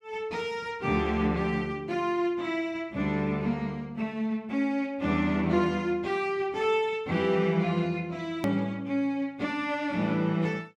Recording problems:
click at an edit; at 8.5 s

